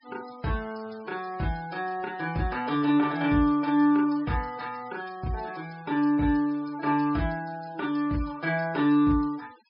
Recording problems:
treble cut off; nothing above 5.5 kHz
denoising artefacts; signal-to-artefact ratio 24 dB

